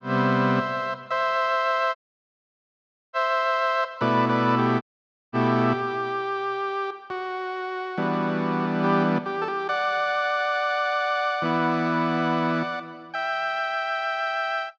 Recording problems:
dropout; at 2 s for 1 s and at 5 s for 0.5 s

